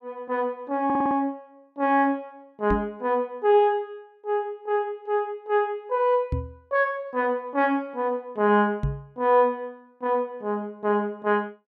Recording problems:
stutter; at 1 s
microphone thump; at 2.5 s, at 6.5 s and at 9 s; peak +2 dB vs average level

